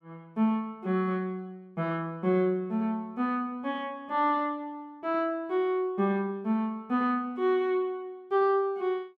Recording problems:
none

